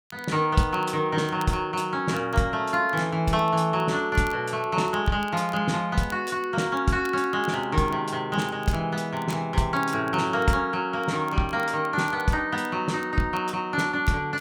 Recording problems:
crackling; vinyl, SNR 26 dB

